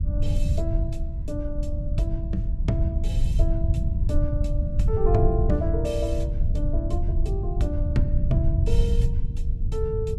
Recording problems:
low-frequency rumble; below 86 Hz, SNR -6 dB

